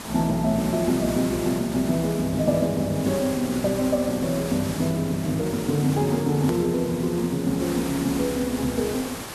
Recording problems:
background hiss; slope -3 dB per octave, SNR 11 dB
click at an edit; at 6.5 s

